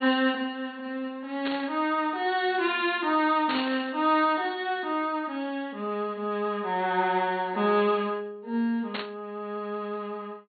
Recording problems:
treble cut off; nothing above 4.4 kHz
burst of static; at 1.5 s, at 3.5 s and at 9 s; peak -1 dB vs average level

